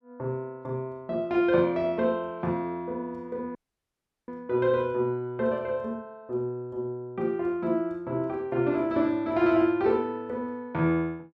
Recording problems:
audio cutting out; at 3.5 s for 0.5 s

